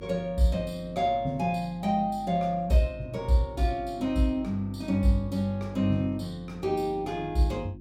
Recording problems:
mains hum; 50 Hz, harmonics up to 350 Hz, SNR 18 dB

